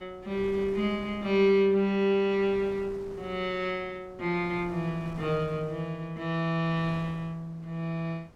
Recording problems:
wind noise; below 680 Hz, SNR 20 dB

